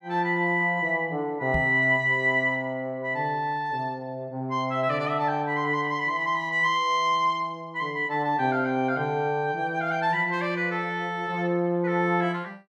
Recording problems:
knock on the microphone; at 1.5 s; peak -1 dB vs average level

